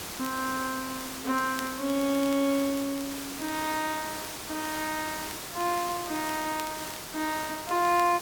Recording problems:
background hiss; slope -2 dB per octave, SNR 6 dB
crackling; vinyl, SNR 19 dB

